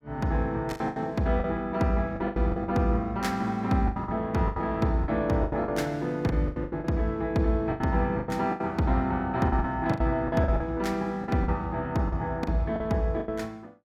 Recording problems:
packet loss; 13% of the sound replaced, filled with the last packet

